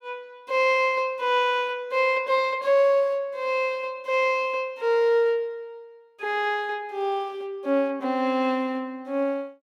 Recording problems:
none

